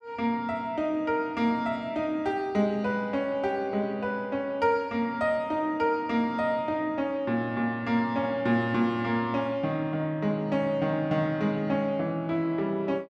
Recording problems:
none

